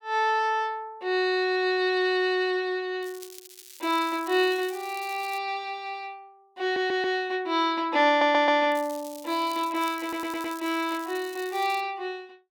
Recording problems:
crackle; from 3 to 5.5 s and from 8.5 to 12 s; loose cable, SNR 19 dB
stutter; at 6.5 s, at 8 s and at 10 s

